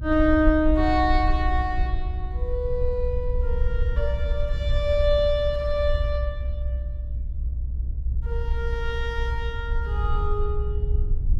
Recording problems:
low-frequency rumble; below 64 Hz, SNR 2 dB

